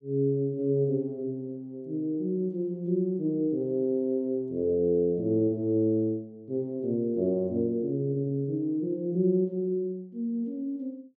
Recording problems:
none

